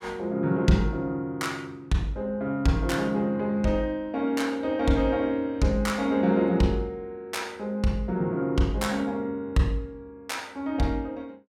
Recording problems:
none

